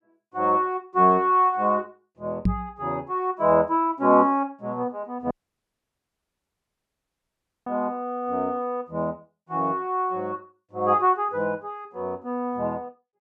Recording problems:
microphone thump; at 2.5 s; peak +5 dB vs average level
audio cutting out; at 5.5 s for 2.5 s

